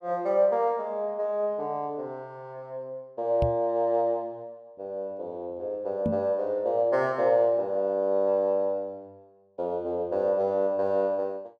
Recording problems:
microphone thump; at 3.5 s and at 6 s; peak +2 dB vs average level

